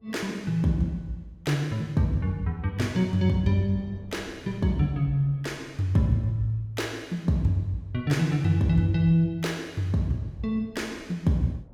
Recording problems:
wind noise; below 300 Hz, SNR 26 dB

